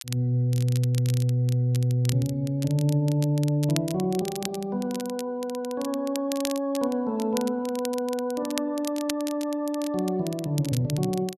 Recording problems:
crackling; vinyl, SNR 13 dB

